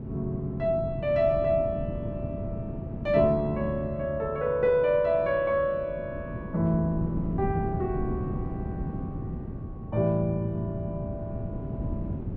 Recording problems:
wind noise; below 240 Hz, SNR 8 dB

